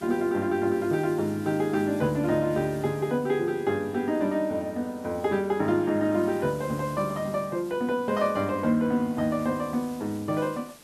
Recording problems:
background hiss; slope -2 dB per octave, SNR 23 dB

